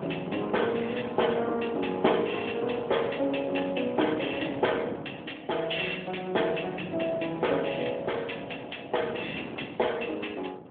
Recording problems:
phone line; 190 Hz to 3.5 kHz, AMR-NB
wind on the microphone; below 620 Hz, SNR 11 dB

